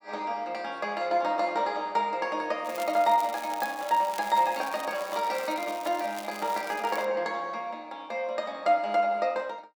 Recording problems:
crackling; from 2.5 to 7 s; loose cable, SNR 16 dB

